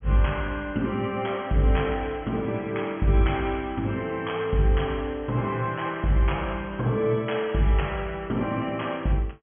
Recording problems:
treble missing; nothing above 3.3 kHz

